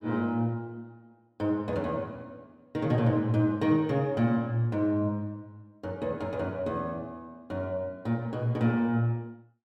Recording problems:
none

